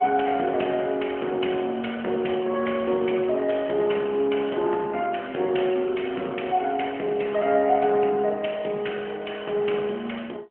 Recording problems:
telephone audio; 260 Hz to 3.3 kHz, AMR-NB

